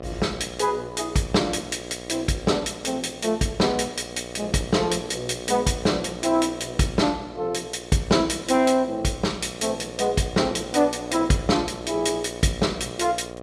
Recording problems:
hum; 60 Hz, harmonics up to 2 kHz, SNR 14 dB

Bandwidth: 14.5 kHz